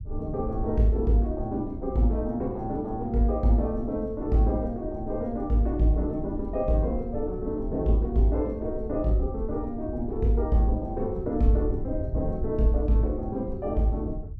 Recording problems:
low-frequency rumble; below 80 Hz, SNR 10 dB

